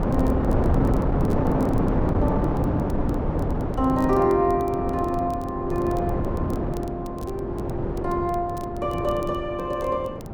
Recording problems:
wind on the microphone; below 430 Hz, SNR -1 dB
crackling; vinyl, SNR 25 dB

